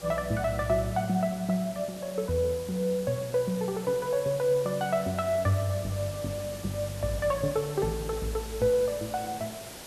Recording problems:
background hiss; slope -3 dB per octave, SNR 14 dB

